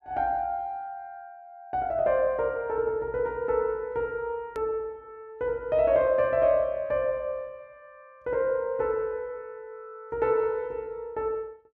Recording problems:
hard cut with a click; at 4.5 s

